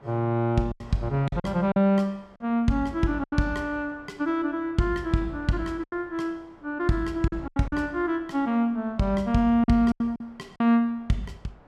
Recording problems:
wind noise; below 1.1 kHz, SNR 25 dB
lost packets; 7% of the sound replaced, filled with silence

